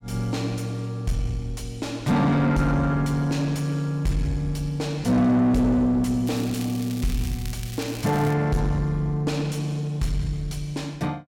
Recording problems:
distorted audio; soft clipping, signal-to-distortion ratio 6 dB
crackle; from 6.5 to 8.5 s; loose cable, SNR 16 dB

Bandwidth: 16.5 kHz